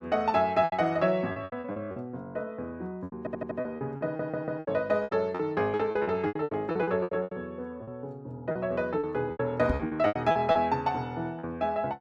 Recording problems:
packet loss; 15% of the sound replaced, filled with repeated pitch periods
stutter; at 3 s and at 4 s
microphone bump; at 9.5 s; peak +5 dB vs average level

